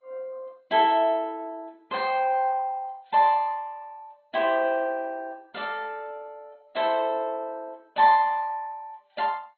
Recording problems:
lossy compression; MP2, then AAC, log-spectral distance 2 dB, nothing above 4.1 kHz

